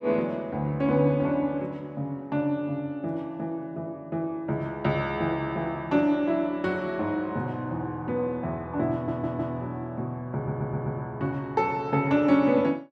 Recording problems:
stutter; at 9 s and at 10 s

